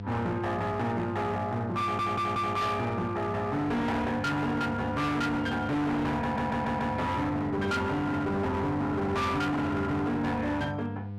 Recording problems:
distortion; hard clipping, uneven, signal-to-distortion ratio 8 dB
hum; 50 Hz, harmonics up to 700 Hz, SNR 10 dB
stutter; at 2 s and at 6 s

